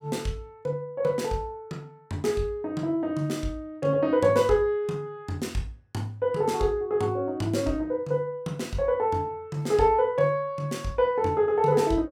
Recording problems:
none

